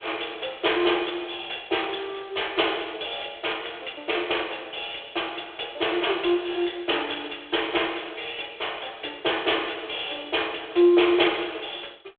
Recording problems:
telephone audio; 300 Hz to 3.5 kHz, G.726

